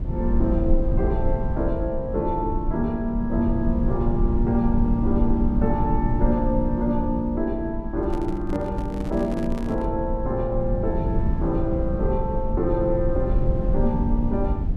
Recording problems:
low-frequency rumble; below 96 Hz, SNR 2 dB
microphone handling noise; from 8 to 10 s; peak -5 dB vs average level

